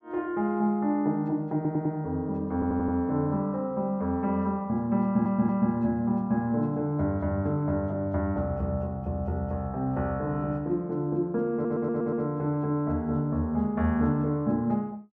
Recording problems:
audio stuttering; 4 times, first at 1.5 s

